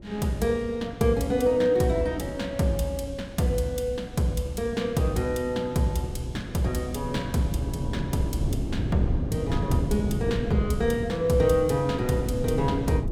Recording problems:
wind on the microphone; below 230 Hz, SNR 7 dB

